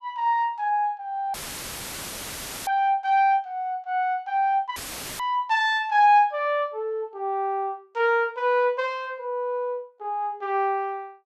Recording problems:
audio cutting out; at 1.5 s for 1.5 s and at 5 s; filled with static

